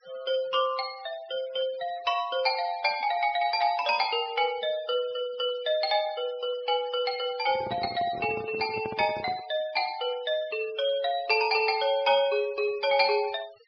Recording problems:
low-pass filter; nothing above 5.5 kHz
denoising artefacts; signal-to-artefact ratio 20 dB
microphone handling noise; from 7.5 to 9.5 s; peak -6 dB vs average level

